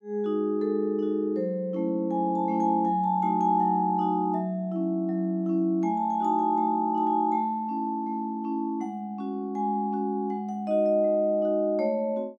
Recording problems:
none

